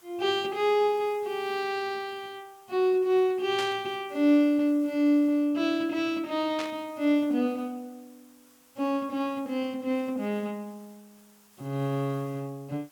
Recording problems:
background hiss; SNR 29 dB
burst of static; at 3.5 s and at 6.5 s; peak -5 dB vs average level

